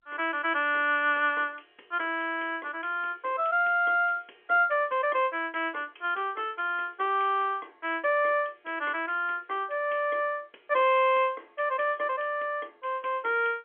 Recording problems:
phone line; 320 Hz to 3.4 kHz, G.711

